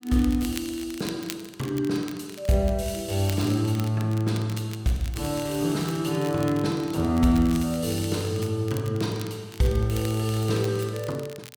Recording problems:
crackling; vinyl, SNR 17 dB

